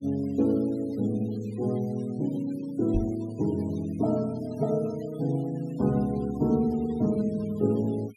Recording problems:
denoising artefacts; signal-to-artefact ratio 24 dB
microphone thump; at 3 s; peak +3 dB vs average level

